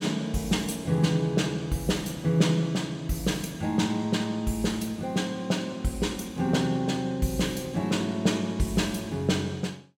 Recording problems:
none

